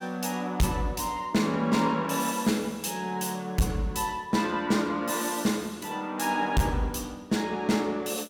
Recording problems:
distorted audio; hard clipping, signal-to-distortion ratio 10 dB

